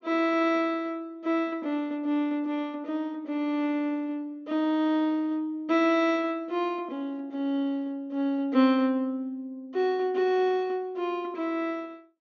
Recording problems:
treble cut off; nothing above 6.6 kHz

